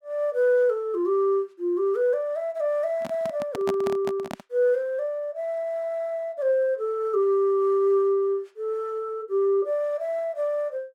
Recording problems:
handling noise; from 3 to 4.5 s; peak -2 dB vs average level

